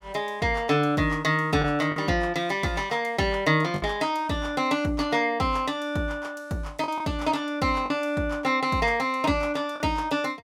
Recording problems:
lost packets; 3% of the sound replaced, filled with the last packet

